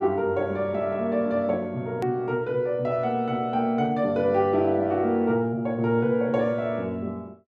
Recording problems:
hard cut with a click; at 2 s

